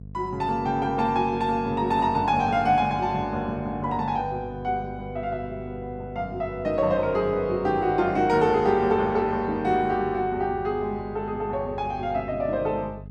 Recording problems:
hum; 50 Hz, harmonics up to 500 Hz, SNR 16 dB

